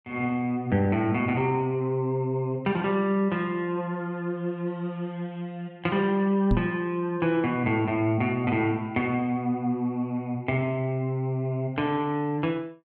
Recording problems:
knock on the microphone; at 6.5 s; peak +5 dB vs average level

